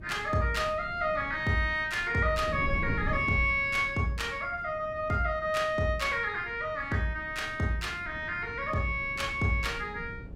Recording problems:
wind noise; below 190 Hz, SNR 13 dB

